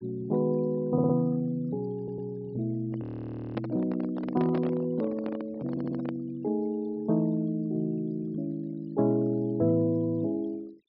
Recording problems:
low-pass filter; nothing above 5.4 kHz
noise reduction artefacts; signal-to-artefact ratio 27 dB
stutter; at 1 s, at 2 s and at 5.5 s
handling noise; from 3 to 6 s; peak -1 dB vs average level
frozen audio; at 3 s for 0.5 s

